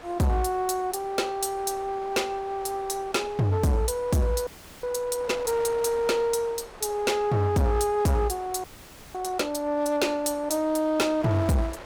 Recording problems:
distortion; hard clipping, signal-to-distortion ratio 7 dB
wind on the microphone; below 1.8 kHz, SNR 19 dB
frozen audio; at 4.5 s and at 8.5 s for 0.5 s

